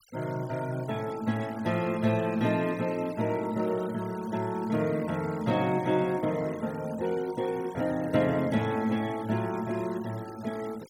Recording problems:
noise reduction artefacts; signal-to-artefact ratio 20 dB

